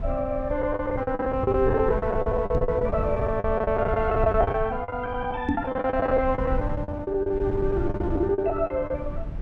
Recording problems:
rumble; below 120 Hz, SNR 8 dB
packet loss; 18% of the sound replaced, filled with the last packet
microphone bump; at 2.5 s and at 5.5 s; peak +4 dB vs average level

